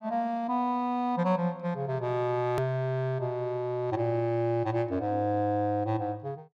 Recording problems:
click at an edit; at 2.5 s

